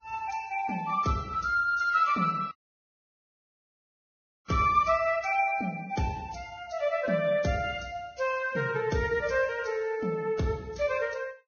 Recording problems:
lossy compression; Vorbis, log-spectral distance 3 dB, nothing above 6.5 kHz
dropout; at 2.5 s for 2 s

